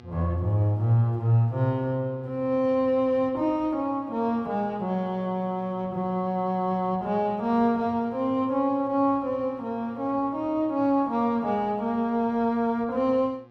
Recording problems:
electrical hum; 60 Hz, harmonics up to 2 kHz, SNR 25 dB

